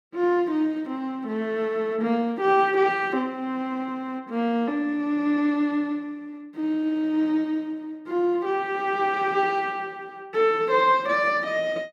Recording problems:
none

